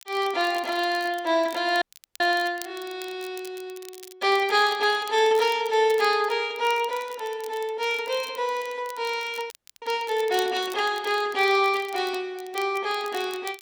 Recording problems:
crackling; vinyl, SNR 20 dB
frozen audio; at 2 s and at 9.5 s

